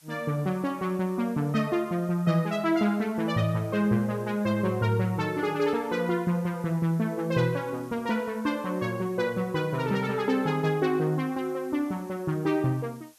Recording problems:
background hiss; slope +2 dB per octave, SNR 27 dB

